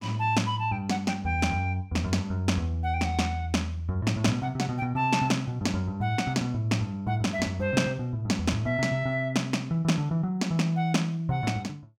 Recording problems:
none

